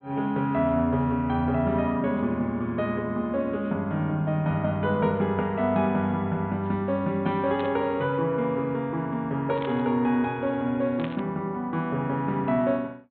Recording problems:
treble cut off; nothing above 4 kHz
burst of static; at 7.5 s, at 9.5 s and at 11 s; peak -8 dB vs average level

